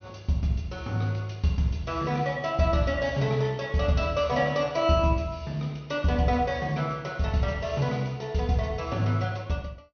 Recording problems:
treble cut off; nothing above 6.2 kHz

